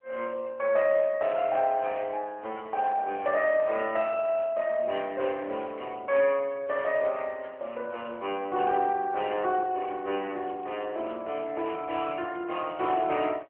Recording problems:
telephone audio; 320 Hz to 3.2 kHz, AMR-NB

